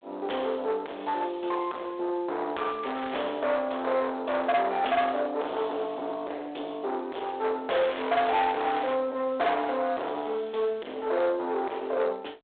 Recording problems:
telephone audio; 800 Hz to 3.6 kHz, G.726
distorted audio; soft clipping, signal-to-distortion ratio 8 dB
crackling; at 3 s and from 7.5 to 9 s; loose cable, SNR 12 dB

